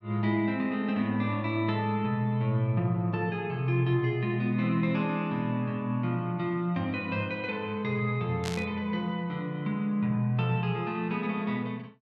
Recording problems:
burst of static; at 8.5 s; peak -3 dB vs average level

